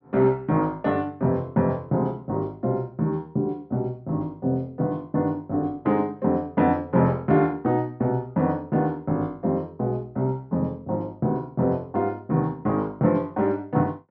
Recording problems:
treble missing; nothing above 5.7 kHz

